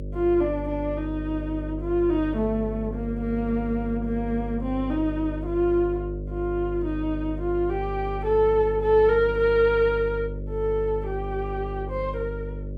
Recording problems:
hum; 50 Hz, harmonics up to 600 Hz, SNR 8 dB

